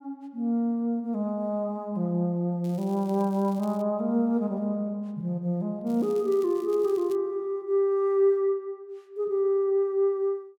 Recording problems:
crackling; from 2.5 to 4 s and from 6 to 7 s; loose cable, SNR 27 dB

